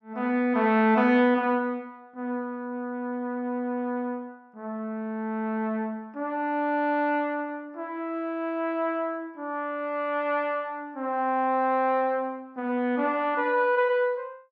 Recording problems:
none

